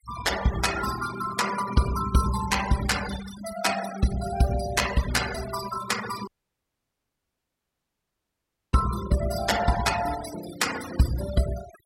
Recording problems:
noise reduction artefacts; signal-to-artefact ratio 9 dB
dropout; at 6.5 s for 2.5 s

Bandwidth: 16 kHz